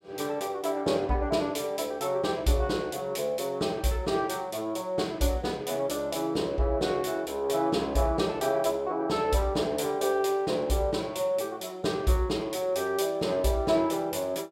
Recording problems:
none

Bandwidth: 16 kHz